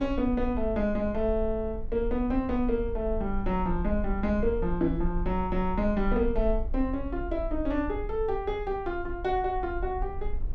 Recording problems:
rumble; below 52 Hz, SNR 8 dB

